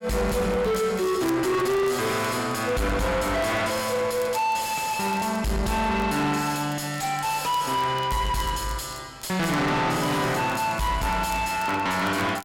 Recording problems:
distortion; soft clipping, signal-to-distortion ratio 6 dB
crackle; vinyl, SNR 23 dB

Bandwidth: 16.5 kHz